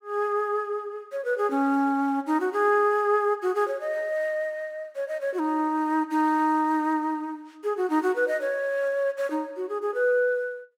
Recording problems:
none

